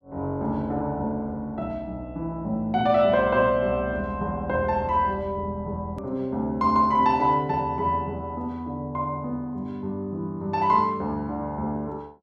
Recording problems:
hard cut with a click; at 6 s

